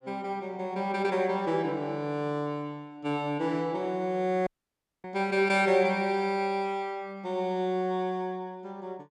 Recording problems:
dropout; at 4.5 s for 0.5 s

